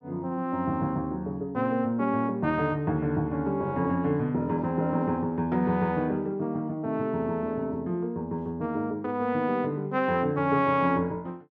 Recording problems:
none

